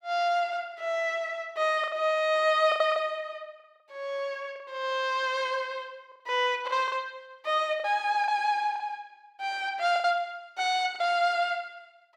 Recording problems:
packet loss; 5% of the sound replaced, filled with the last packet

